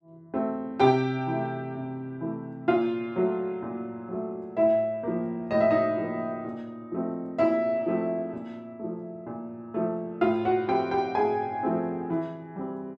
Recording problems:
none

